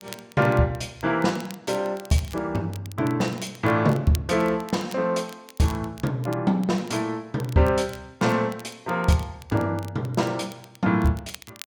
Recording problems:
crackle; vinyl, SNR 21 dB

